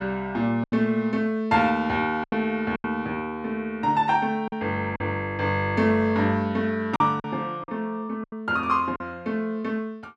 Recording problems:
lost packets; 6% of the sound replaced, filled with silence

